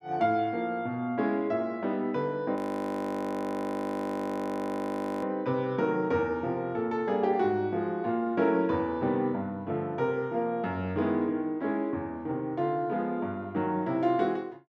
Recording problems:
frozen audio; at 2.5 s for 2.5 s

